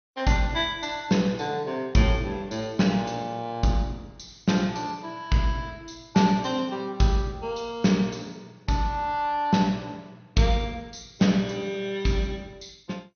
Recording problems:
codec artefacts; MP2, log-spectral distance 3 dB, nothing above 6.3 kHz

